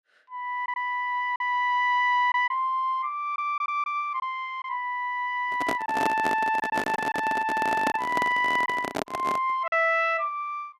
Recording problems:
packet loss; 4% of the sound replaced, filled with silence
handling noise; from 5.5 to 9.5 s; peak +1 dB vs average level

